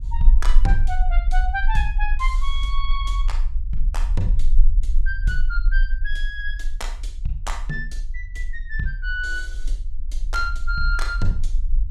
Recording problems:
low-frequency rumble; below 38 Hz, SNR -3 dB

